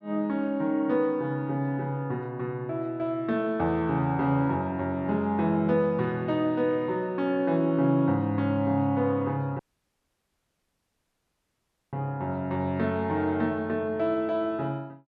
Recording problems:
dropout; at 9.5 s for 2.5 s

